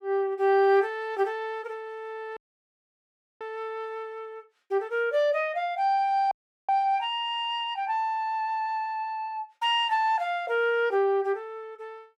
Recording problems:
audio cutting out; at 2.5 s for 1 s and at 6.5 s

